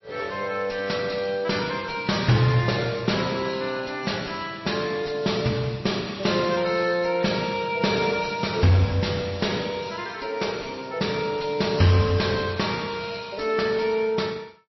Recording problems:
codec artefacts; MP3, log-spectral distance 7 dB, nothing above 5.7 kHz
distorted audio; soft clipping, signal-to-distortion ratio 11 dB

